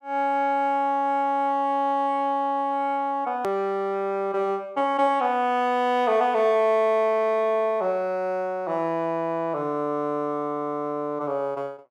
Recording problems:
click at an edit; at 3.5 s

